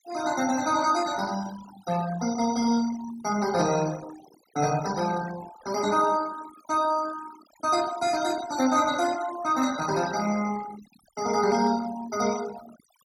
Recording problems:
noise reduction artefacts; signal-to-artefact ratio 14 dB

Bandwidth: 17 kHz